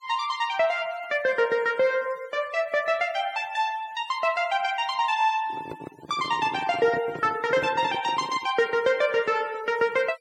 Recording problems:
noise reduction artefacts; signal-to-artefact ratio 22 dB
microphone handling noise; from 5.5 to 8.5 s; peak -7 dB vs average level

